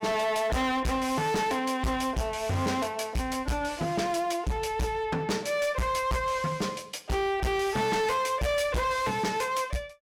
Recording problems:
distortion; hard clipping, signal-to-distortion ratio 7 dB

